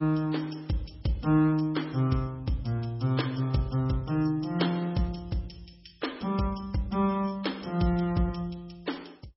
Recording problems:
lossy codec; MP3, log-spectral distance 5 dB, nothing above 5.5 kHz

